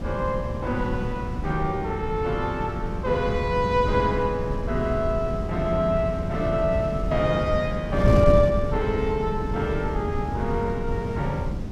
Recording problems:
wind on the microphone; below 190 Hz, SNR 3 dB

